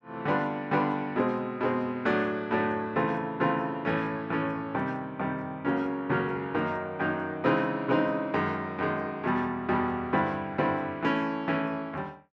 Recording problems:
none

